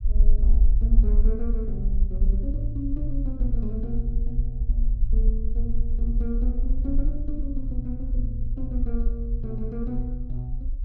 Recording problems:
low-frequency rumble; below 46 Hz, SNR -7 dB

